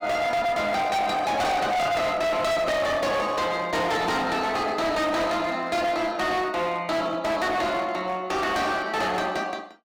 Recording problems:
distortion; hard clipping, signal-to-distortion ratio 7 dB

